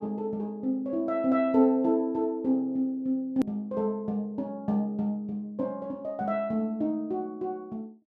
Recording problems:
click at an edit; at 3.5 s

